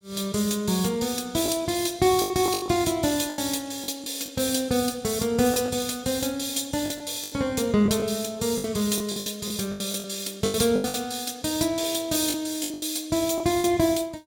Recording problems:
lost packets; 10% of the sound replaced, filled with the last packet

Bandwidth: 17 kHz